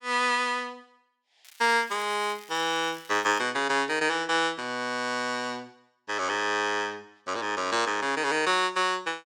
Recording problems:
crackling; from 1.5 to 3.5 s; loose cable, SNR 23 dB

